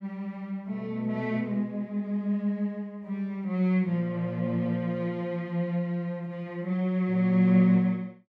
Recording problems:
none

